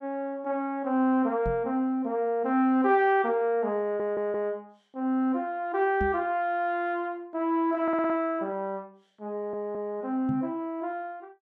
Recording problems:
knock on the microphone; at 1.5 s, at 6 s and at 10 s; peak -2 dB vs average level
stutter; at 4 s, at 8 s and at 9.5 s

